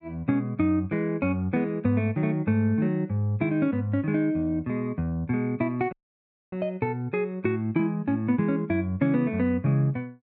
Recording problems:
audio cutting out; at 6 s for 0.5 s

